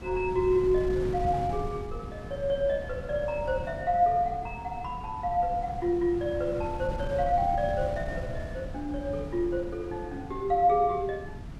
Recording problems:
wind on the microphone; below 190 Hz, SNR 10 dB

